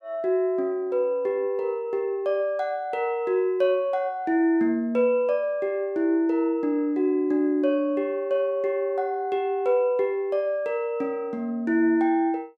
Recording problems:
none

